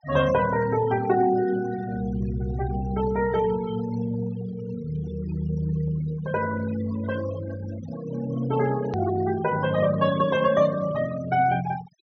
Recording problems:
treble missing; nothing above 6.3 kHz
noise reduction artefacts; signal-to-artefact ratio 16 dB
hard cut with a click; at 9 s

